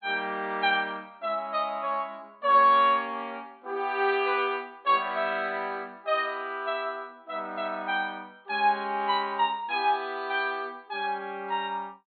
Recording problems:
treble missing; nothing above 4.4 kHz

